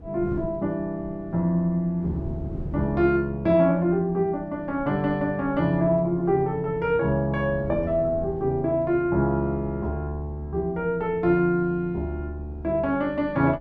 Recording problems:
wind noise; below 230 Hz, SNR 17 dB

